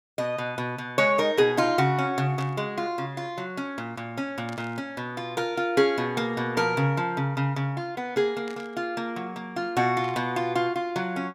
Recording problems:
burst of static; 4 times, first at 2.5 s; peak -12 dB vs average level

